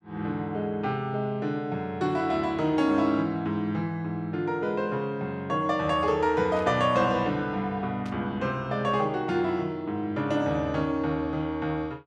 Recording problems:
burst of static; at 6.5 s and at 8 s; peak -15 dB vs average level

